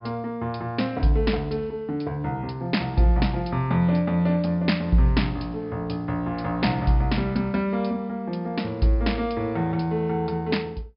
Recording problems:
low-pass filter; nothing above 5.2 kHz

